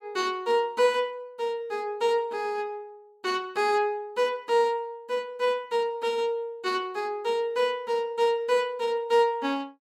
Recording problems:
none

